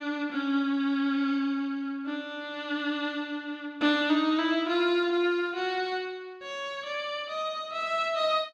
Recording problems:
none

